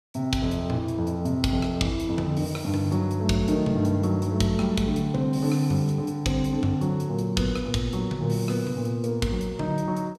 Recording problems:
none

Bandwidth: 15.5 kHz